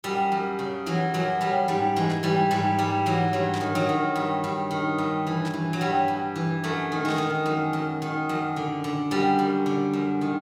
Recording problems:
burst of static; 4 times, first at 2 s; peak -9 dB vs average level

